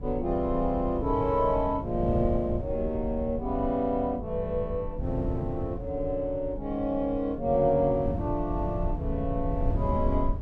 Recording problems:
rumble; below 70 Hz, SNR 10 dB
wind on the microphone; below 180 Hz, SNR 8 dB

